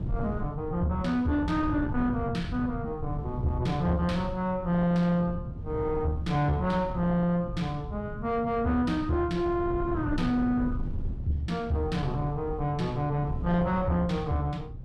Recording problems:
distortion; soft clipping, signal-to-distortion ratio 11 dB
low-frequency rumble; below 150 Hz, SNR 10 dB
wind on the microphone; below 150 Hz, SNR 12 dB

